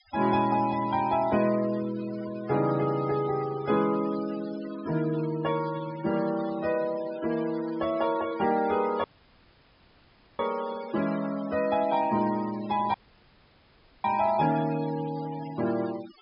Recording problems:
low-pass filter; nothing above 5.5 kHz
noise reduction artefacts; signal-to-artefact ratio 17 dB
audio cutting out; at 9 s for 1.5 s and at 13 s for 1 s

